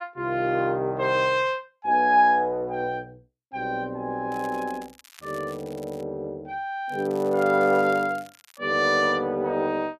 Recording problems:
crackling; from 4.5 to 6 s and from 7 to 8.5 s; loose cable, SNR 25 dB

